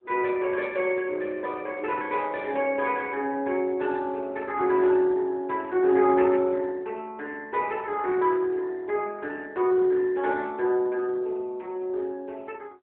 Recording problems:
telephone audio; 300 Hz to 3.5 kHz, AMR-NB

